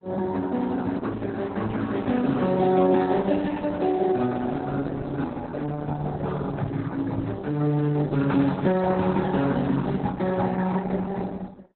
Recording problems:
lossy codec; Speex, then Opus, log-spectral distance 4 dB, nothing above 4 kHz

